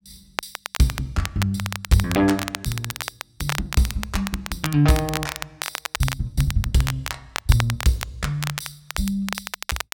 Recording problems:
crackling; vinyl, SNR 7 dB

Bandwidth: 16.5 kHz